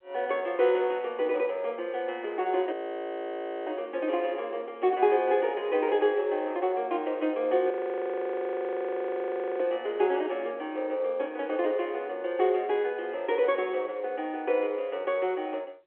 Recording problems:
telephone audio; 280 Hz to 3.9 kHz, G.711
audio freezing; at 2.5 s for 1 s and at 7.5 s for 2 s

